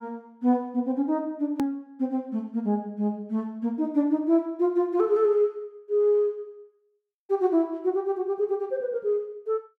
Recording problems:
hard cut with a click; at 1.5 s

